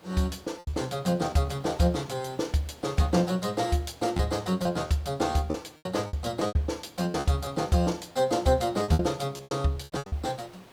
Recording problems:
background hiss; slope -5 dB per octave, SNR 24 dB
packet loss; 9% of the sound replaced, filled with repeated pitch periods

